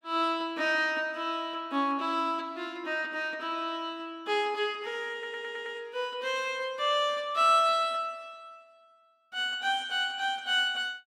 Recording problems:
stutter; at 5 s

